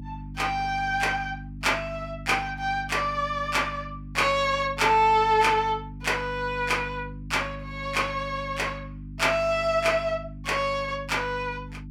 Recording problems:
electrical hum; 50 Hz, harmonics up to 300 Hz, SNR 14 dB

